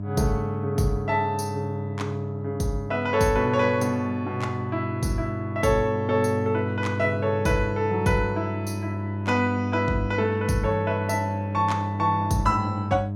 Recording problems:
hum; 50 Hz, harmonics up to 700 Hz, SNR 6 dB

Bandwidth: 16.5 kHz